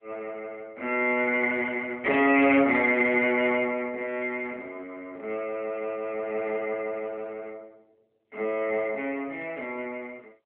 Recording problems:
phone line; 240 Hz to 3.3 kHz, AMR-NB

